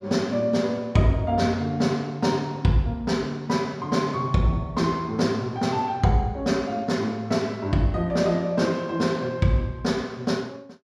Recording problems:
none

